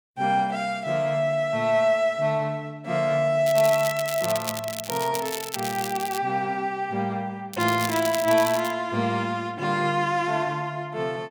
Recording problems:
crackling; from 3.5 to 6 s and from 7.5 to 8.5 s; loose cable, SNR 9 dB

